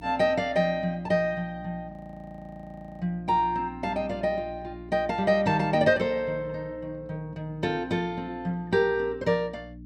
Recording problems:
electrical hum; 60 Hz, harmonics up to 300 Hz, SNR 20 dB
audio freezing; at 2 s for 1 s

